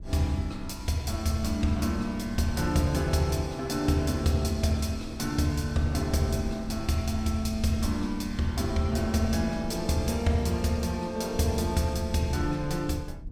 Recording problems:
low-frequency rumble; below 80 Hz, SNR 15 dB

